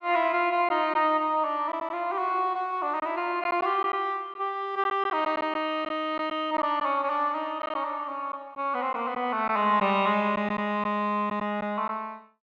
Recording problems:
packet loss; 4% of the sound replaced, filled with silence

